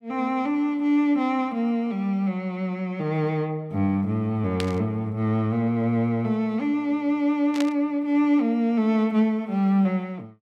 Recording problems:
static burst; at 4.5 s and at 7.5 s; peak -3 dB vs average level

